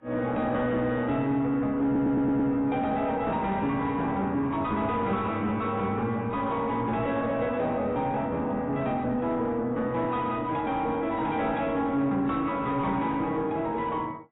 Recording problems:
codec artefacts; AAC, log-spectral distance 2 dB, nothing above 3.8 kHz
distorted audio; soft clipping, signal-to-distortion ratio 10 dB
audio stuttering; at 2 s

